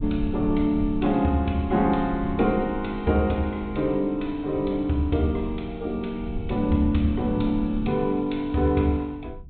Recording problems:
treble cut off; nothing above 4 kHz
low-frequency rumble; below 110 Hz, SNR 12 dB

